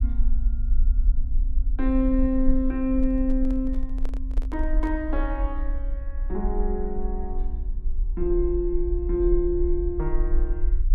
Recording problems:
rumble; below 44 Hz, strongest tone 20 Hz, SNR 2 dB
microphone handling noise; from 3 to 5 s; peak -10 dB vs average level

